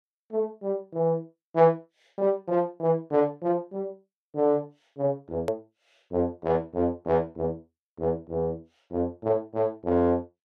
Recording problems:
hard cut with a click; at 5.5 s

